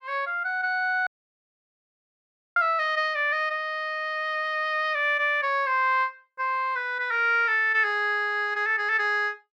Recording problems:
audio cutting out; at 1 s for 1.5 s

